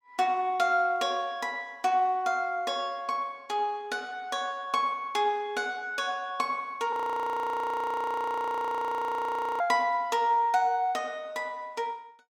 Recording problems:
frozen audio; at 7 s for 2.5 s

